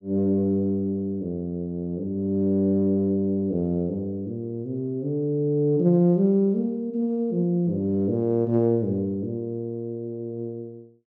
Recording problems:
none

